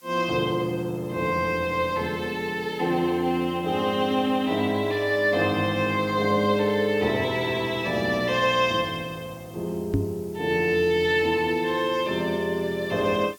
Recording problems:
hiss; slope +1 dB per octave, SNR 27 dB
microphone thump; at 10 s; peak +3 dB vs average level

